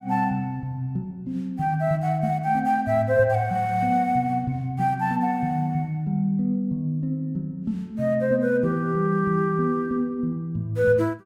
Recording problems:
none

